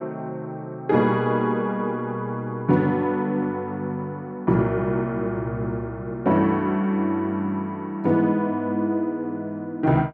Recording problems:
none

